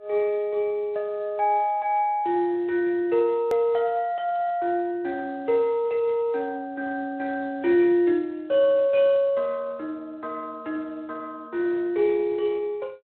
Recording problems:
telephone audio; 280 Hz to 3.8 kHz, Speex
hard cut with a click; at 3.5 s

